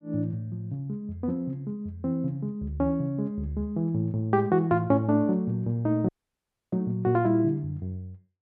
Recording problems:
dropout; at 6 s for 0.5 s

